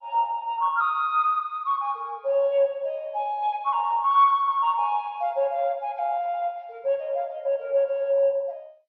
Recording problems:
lossy compression; MP2, log-spectral distance 2 dB

